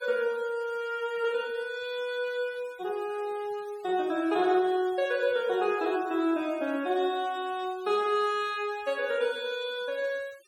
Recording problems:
noise reduction artefacts; signal-to-artefact ratio 23 dB

